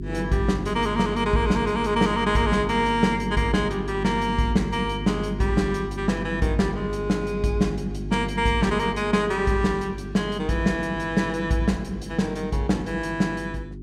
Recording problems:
hum; 50 Hz, harmonics up to 400 Hz, SNR 10 dB

